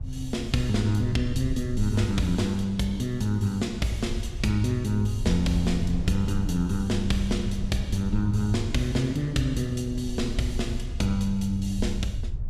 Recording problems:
low-frequency rumble; below 82 Hz, SNR 9 dB
wind on the microphone; below 150 Hz, SNR 14 dB

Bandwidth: 14.5 kHz